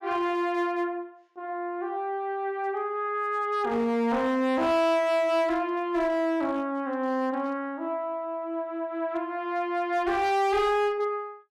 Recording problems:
distorted audio; hard clipping, uneven, signal-to-distortion ratio 10 dB

